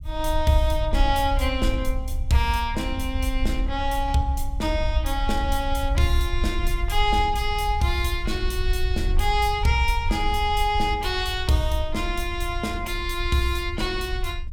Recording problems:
rumble; below 64 Hz, SNR 4 dB

